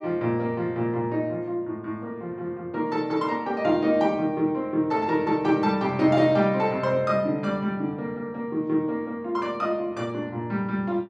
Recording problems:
none

